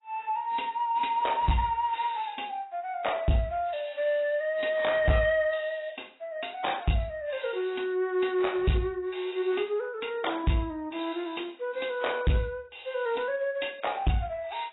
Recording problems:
lossy codec; AAC, log-spectral distance 5 dB, nothing above 3.8 kHz
distortion; soft clipping, signal-to-distortion ratio 8 dB

